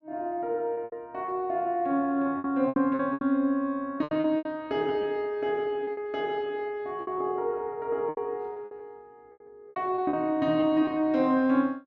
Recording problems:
lost packets; 10% of the sound replaced, filled with repeated pitch periods

